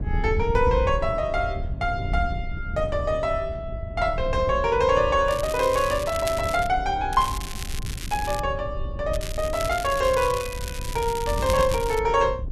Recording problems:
wind noise; below 100 Hz, SNR 8 dB
crackling; from 5.5 to 6.5 s, from 7 to 8.5 s and from 9 to 12 s; loose cable, SNR 12 dB

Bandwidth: 12.5 kHz